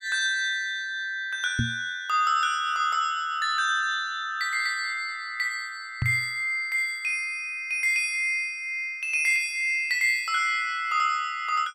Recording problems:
microphone bump; at 1.5 s and at 6 s; peak +2 dB vs average level

